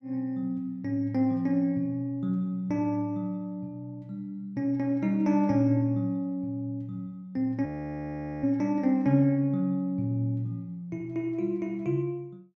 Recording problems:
frozen audio; at 7.5 s for 1 s

